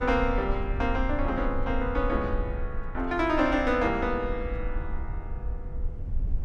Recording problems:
rumble; below 62 Hz, SNR 6 dB

